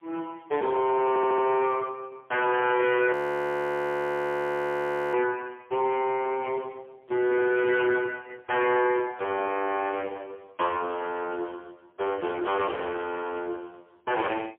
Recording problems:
phone line; 300 Hz to 2.8 kHz, AMR-NB, then MP3
distortion; soft clipping, signal-to-distortion ratio 6 dB
audio stuttering; at 1 s
frozen audio; at 3 s for 2 s

